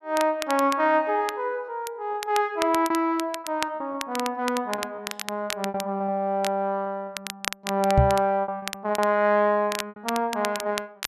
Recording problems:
crackle; vinyl, SNR 10 dB
packet loss; 8% of the sound replaced, filled with repeated pitch periods
knock on the microphone; at 8 s; peak +9 dB vs average level

